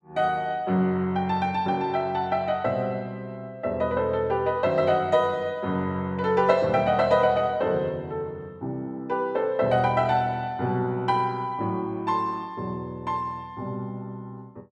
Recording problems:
none

